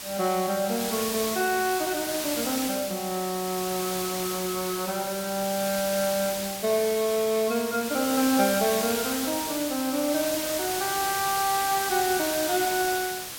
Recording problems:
hiss; slope 0 dB per octave, SNR 4 dB

